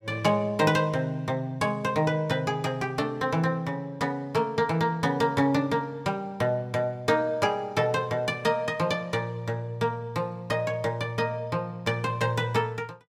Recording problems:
none

